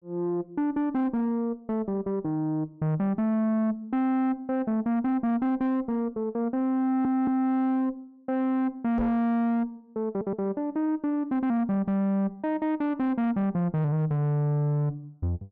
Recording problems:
distorted audio; soft clipping, signal-to-distortion ratio 10 dB
stutter; at 7 s and at 10 s
microphone bump; at 9 s; peak +2 dB vs average level

